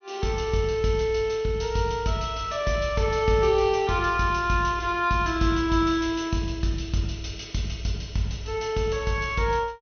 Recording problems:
treble cut off; nothing above 6.3 kHz

